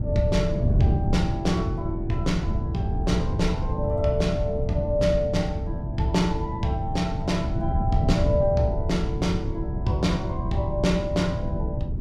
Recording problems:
wind on the microphone; below 140 Hz, SNR 1 dB

